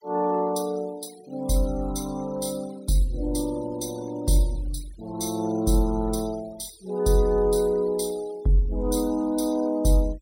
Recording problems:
denoising artefacts; signal-to-artefact ratio 23 dB

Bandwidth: 16 kHz